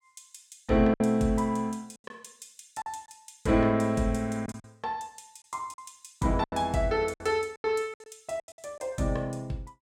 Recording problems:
lost packets; 9% of the sound replaced, filled with silence

